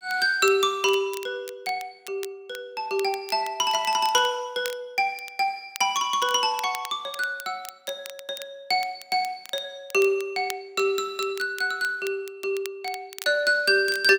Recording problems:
crackle; vinyl, SNR 18 dB

